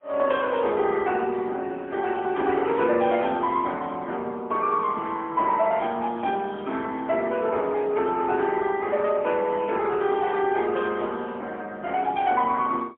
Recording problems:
phone line; 240 Hz to 3.6 kHz, AMR-NB, then MP3

